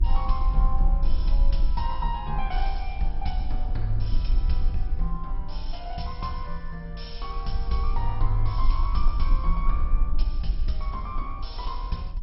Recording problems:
lossy codec; MP2, log-spectral distance 2 dB, nothing above 5.5 kHz
low-frequency rumble; below 44 Hz, strongest tone 18 Hz, SNR -5 dB

